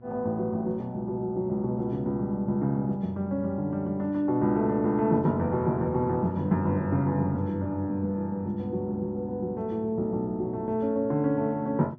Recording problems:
hum; 60 Hz, harmonics up to 960 Hz, SNR 23 dB

